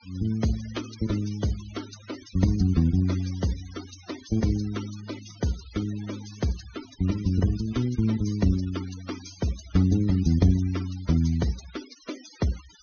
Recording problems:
treble cut off; nothing above 6.5 kHz
denoising artefacts; signal-to-artefact ratio 17 dB

